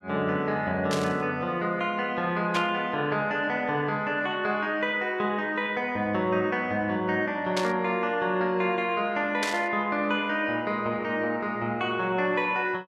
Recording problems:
burst of static; 4 times, first at 1 s; peak +1 dB vs average level

